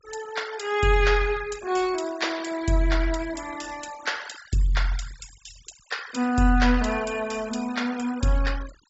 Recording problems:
low-pass filter; nothing above 8 kHz
noise reduction artefacts; signal-to-artefact ratio 17 dB

